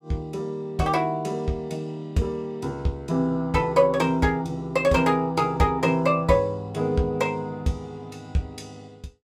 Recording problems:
none

